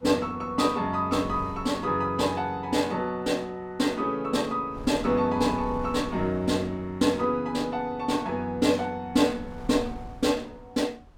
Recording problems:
wind noise; below 180 Hz, SNR 19 dB

